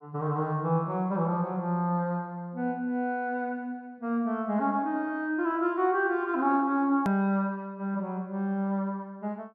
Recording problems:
edit click; at 7 s

